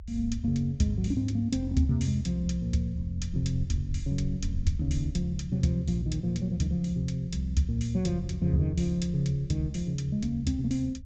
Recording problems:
low-pass filter; nothing above 8 kHz
rumble; below 78 Hz, SNR 12 dB

